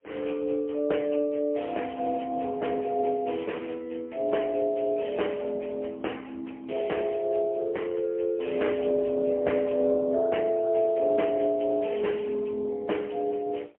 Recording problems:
phone line; 260 Hz to 3.3 kHz, AMR-NB, then MP3

